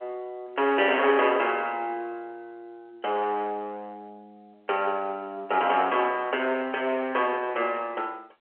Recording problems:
telephone audio; 320 Hz to 3.3 kHz, G.711
distorted audio; hard clipping, signal-to-distortion ratio 12 dB

